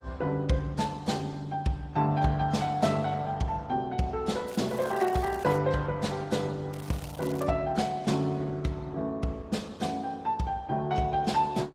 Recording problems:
lossy compression; AAC, then Opus, log-spectral distance 3 dB, nothing above 15.5 kHz
crackling; from 4.5 to 5.5 s and at 6.5 s; loose cable, SNR 19 dB

